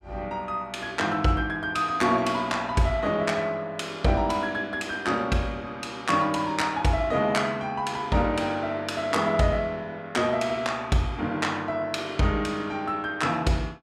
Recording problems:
none

